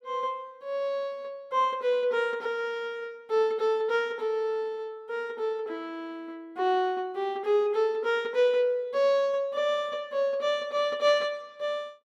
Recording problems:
none

